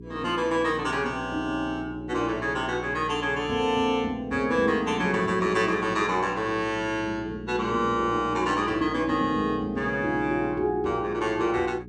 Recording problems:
hum; 60 Hz, harmonics up to 420 Hz, SNR 15 dB

